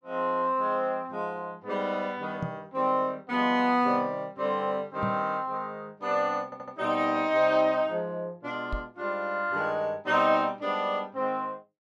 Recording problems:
microphone thump; at 2.5 s, at 5 s and at 8.5 s; peak -1 dB vs average level
stutter; at 6.5 s

